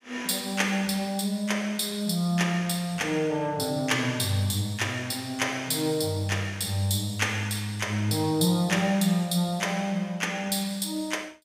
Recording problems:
none

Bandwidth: 15.5 kHz